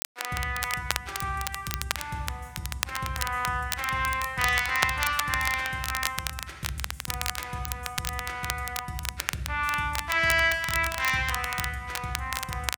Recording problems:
crackle; vinyl, SNR 5 dB

